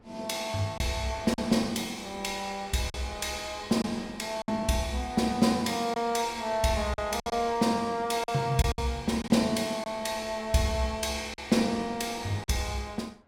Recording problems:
wind noise; below 820 Hz, SNR 23 dB
packet loss; 4% of the sound replaced, filled with silence

